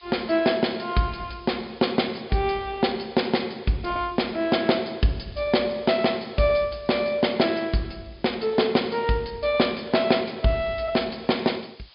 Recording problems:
treble missing; nothing above 5 kHz
background hiss; SNR 27 dB

